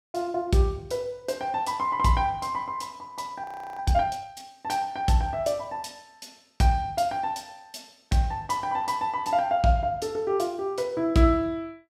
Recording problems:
frozen audio; at 3.5 s

